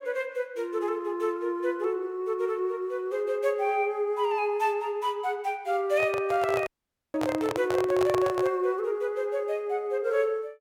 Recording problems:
handling noise; from 6 to 8.5 s; peak +2 dB vs average level
dropout; at 6.5 s

